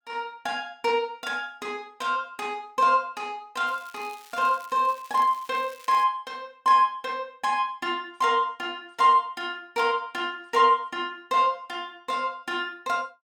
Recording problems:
crackling; from 3.5 to 6 s; loose cable, SNR 24 dB

